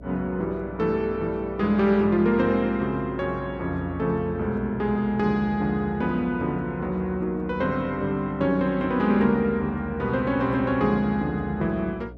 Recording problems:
hum; 60 Hz, harmonics up to 720 Hz, SNR 18 dB

